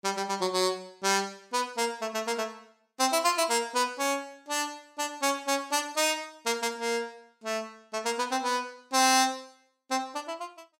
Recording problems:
none

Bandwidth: 16 kHz